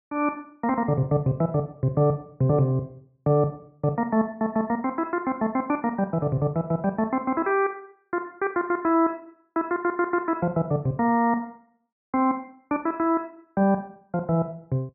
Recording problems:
none

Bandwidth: 2.5 kHz